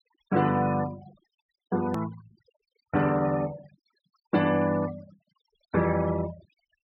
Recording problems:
low-pass filter; nothing above 5.5 kHz
denoising artefacts; signal-to-artefact ratio 17 dB
hard cut with a click; at 2 s

